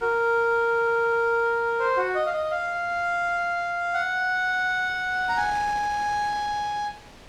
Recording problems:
wind noise; below 3.1 kHz, SNR 21 dB
audio stuttering; at 0.5 s

